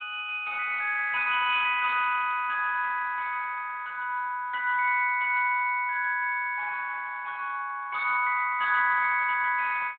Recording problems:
telephone audio; 860 Hz to 2 kHz, Speex

